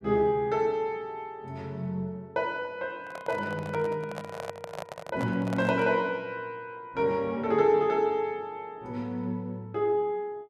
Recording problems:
handling noise; from 3 to 6 s; peak -3 dB vs average level

